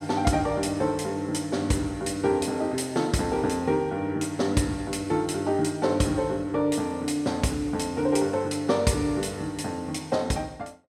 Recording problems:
none

